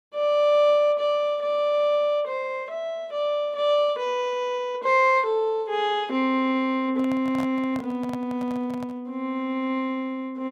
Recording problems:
microphone handling noise; from 7 to 9 s; peak -8 dB vs average level

